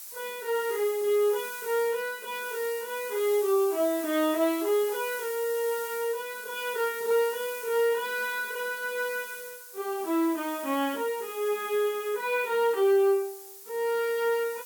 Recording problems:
background hiss; slope +3 dB per octave, SNR 12 dB

